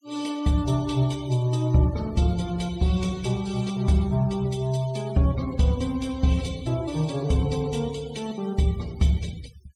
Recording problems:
noise reduction artefacts; signal-to-artefact ratio 21 dB

